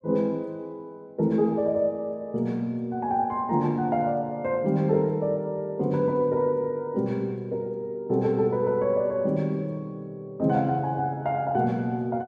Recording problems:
none

